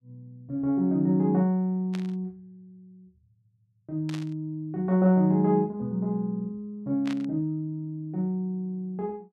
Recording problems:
static burst; at 2 s, at 4 s and at 7 s; peak -9 dB vs average level

